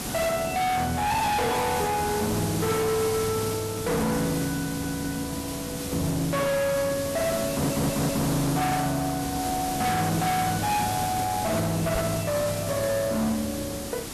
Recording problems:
distorted audio; hard clipping, signal-to-distortion ratio 6 dB
background hiss; SNR 6 dB
stutter; at 4.5 s and at 7.5 s
microphone thump; at 12 s; peak +2 dB vs average level

